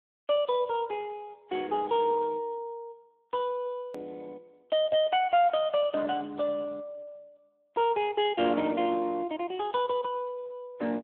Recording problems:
telephone audio; 260 Hz to 3.7 kHz, Speex
hard cut with a click; at 4 s

